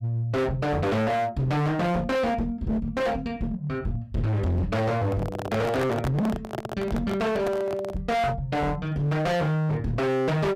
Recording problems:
distorted audio; hard clipping, uneven, signal-to-distortion ratio 5 dB
microphone handling noise; from 5 to 8 s; peak 0 dB vs average level

